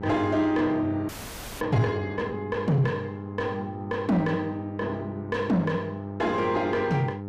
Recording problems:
distorted audio; soft clipping, signal-to-distortion ratio 12 dB
electrical hum; 50 Hz, harmonics up to 1 kHz, SNR 10 dB
audio freezing; at 1 s for 0.5 s

